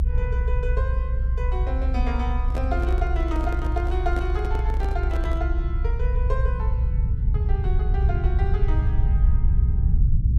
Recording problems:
rumble; below 66 Hz, SNR -8 dB
handling noise; from 2.5 to 5.5 s; peak +1 dB vs average level

